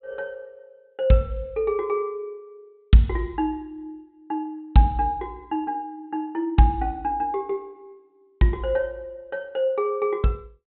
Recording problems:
treble missing; nothing above 4 kHz

